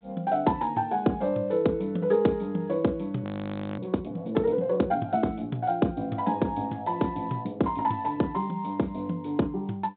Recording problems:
telephone audio; 150 Hz to 3.9 kHz, G.726
audio freezing; at 3 s for 0.5 s

